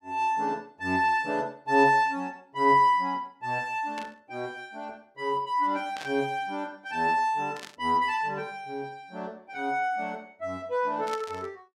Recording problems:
burst of static; 4 times, first at 4 s; peak -8 dB vs average level

